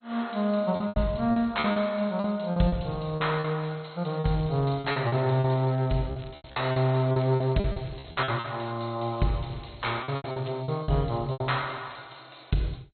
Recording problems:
lossy compression; MP2, log-spectral distance 9 dB, nothing above 4.2 kHz
lost packets; 12% of the sound replaced, filled with repeated pitch periods
crackle; from 4 to 6.5 s, from 6.5 to 8.5 s and from 9 to 11 s; loose cable, SNR 27 dB

